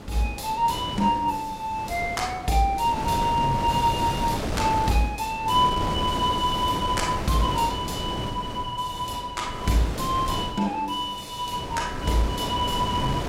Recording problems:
wind on the microphone; below 720 Hz, SNR 6 dB

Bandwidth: 16 kHz